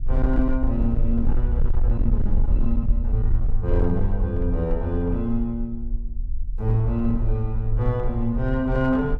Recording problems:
distortion; hard clipping, signal-to-distortion ratio 12 dB
rumble; below 50 Hz, SNR 1 dB

